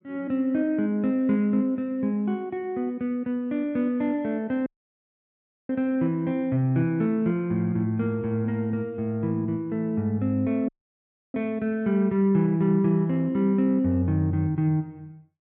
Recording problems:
dropout; at 4.5 s for 1 s and at 11 s for 0.5 s

